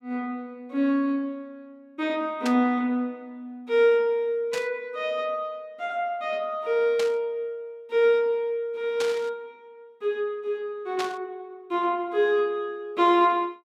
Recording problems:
burst of static; 5 times, first at 2.5 s; peak -3 dB vs average level

